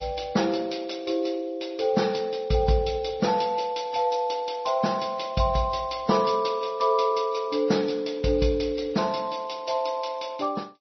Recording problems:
codec artefacts; MP3, log-spectral distance 4 dB, nothing above 5.8 kHz

